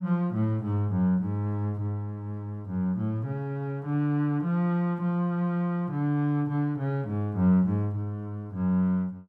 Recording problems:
none

